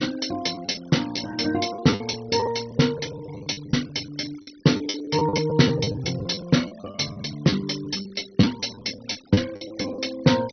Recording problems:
treble missing; nothing above 6.1 kHz
denoising artefacts; signal-to-artefact ratio 18 dB
lost packets; 15% of the sound replaced, filled with the last packet

